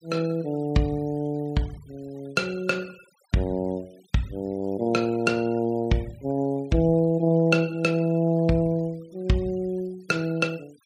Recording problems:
denoising artefacts; signal-to-artefact ratio 27 dB

